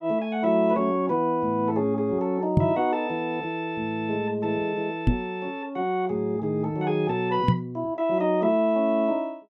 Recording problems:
microphone bump; at 2.5 s, at 5 s and at 7.5 s; peak +9 dB vs average level

